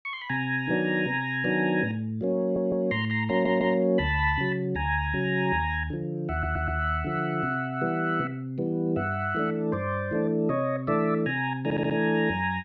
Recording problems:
audio stuttering; 4 times, first at 2.5 s

